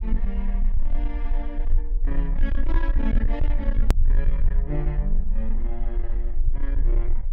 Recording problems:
distortion; soft clipping, signal-to-distortion ratio 10 dB
low-frequency rumble; below 38 Hz, strongest tone 20 Hz, SNR -8 dB
edit click; at 4 s

